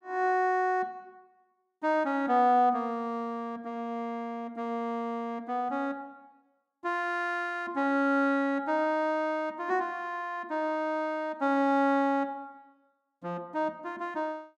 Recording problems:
none

